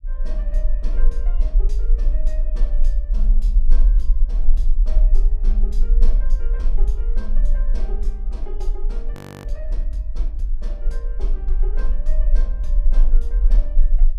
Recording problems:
rumble; below 36 Hz, strongest tone 20 Hz, SNR -17 dB
frozen audio; at 9 s

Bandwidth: 14.5 kHz